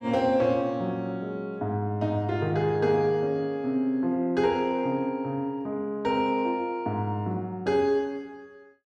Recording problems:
none

